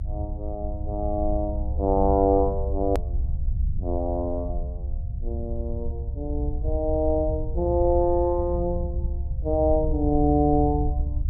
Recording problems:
low-frequency rumble; below 70 Hz, SNR 4 dB
edit click; at 3 s

